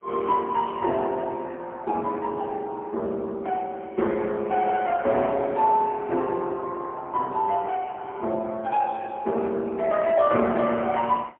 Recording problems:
telephone audio; 260 Hz to 3 kHz, AMR-NB, then MP3

